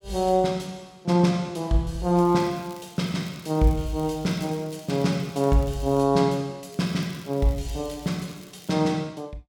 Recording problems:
crackle; from 2 to 6 s and from 6.5 to 8.5 s; loose cable, SNR 24 dB

